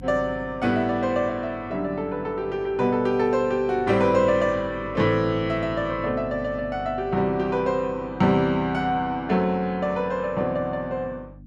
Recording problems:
hum; 50 Hz, harmonics up to 300 Hz, SNR 19 dB

